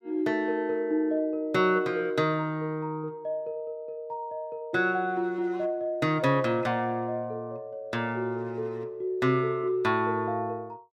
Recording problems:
none

